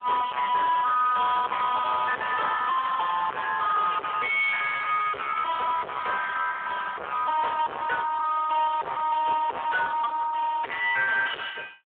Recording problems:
phone line; 320 Hz to 2.7 kHz, Speex
distortion; hard clipping, uneven, signal-to-distortion ratio 2 dB

